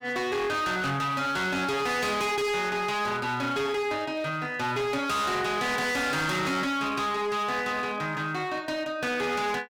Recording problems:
distorted audio; hard clipping, signal-to-distortion ratio 7 dB

